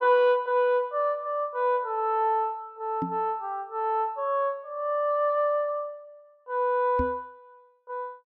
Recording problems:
knock on the microphone; at 3 s and at 7 s; peak 0 dB vs average level

